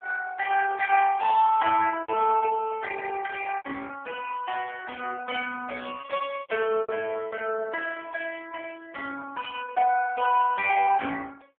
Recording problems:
phone line; 300 Hz to 3 kHz, AMR-NB
lost packets; 5% of the sound replaced, filled with repeated pitch periods

